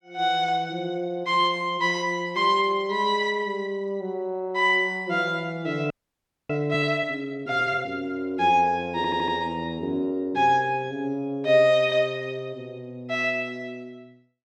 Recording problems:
audio freezing; at 6 s for 0.5 s
audio stuttering; at 9 s

